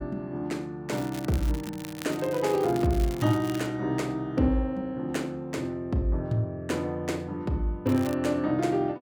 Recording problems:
crackling; from 1 to 3.5 s and at 8 s; loose cable, SNR 16 dB

